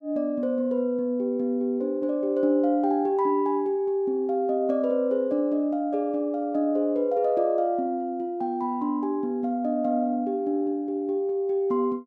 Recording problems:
none

